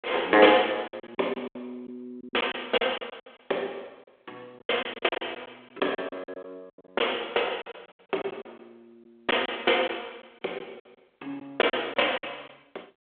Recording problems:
phone line; 300 Hz to 3.5 kHz, G.726
packet loss; 12% of the sound replaced, filled with silence

